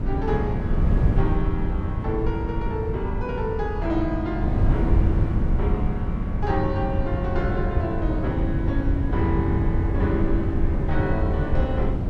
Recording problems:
wind noise; below 130 Hz, SNR -2 dB

